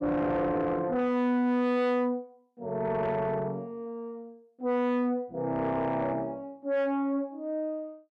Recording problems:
distortion; soft clipping, signal-to-distortion ratio 6 dB

